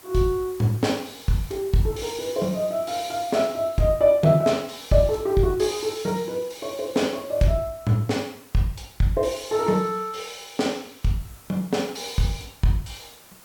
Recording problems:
background hiss; slope -3 dB per octave, SNR 22 dB

